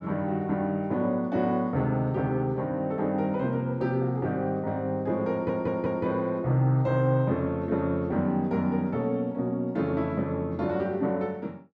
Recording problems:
audio stuttering; at 5.5 s

